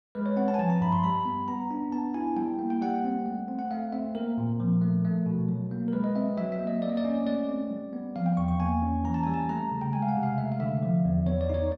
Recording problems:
none

